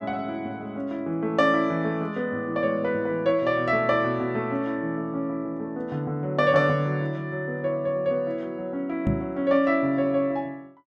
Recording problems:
microphone bump; at 9 s; peak +4 dB vs average level

